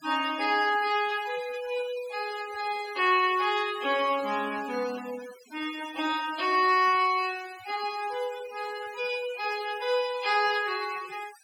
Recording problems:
denoising artefacts; signal-to-artefact ratio 15 dB

